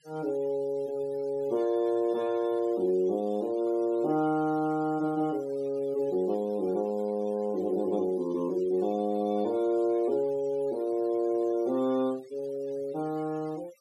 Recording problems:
noise reduction artefacts; signal-to-artefact ratio 24 dB

